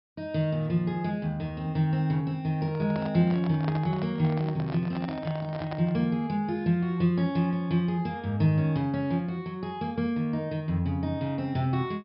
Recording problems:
low-pass filter; nothing above 5.4 kHz
handling noise; from 2.5 to 6 s; peak -4 dB vs average level

